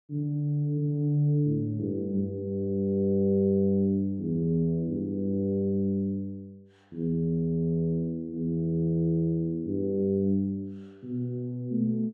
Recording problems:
none

